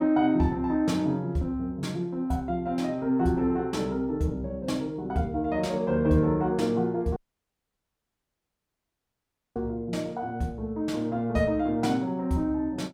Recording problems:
dropout; at 7 s for 2.5 s

